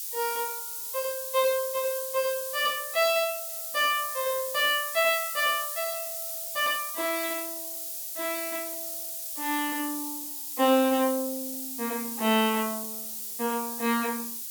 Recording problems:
hiss; SNR 5 dB

